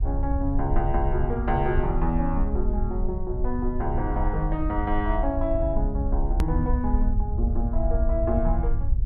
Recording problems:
low-frequency rumble; below 60 Hz, SNR 0 dB
click at an edit; at 6.5 s

